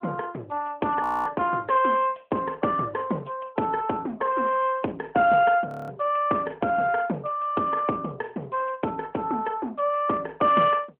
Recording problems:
telephone audio; 190 Hz to 3.1 kHz, AMR-NB
audio freezing; at 1 s and at 5.5 s

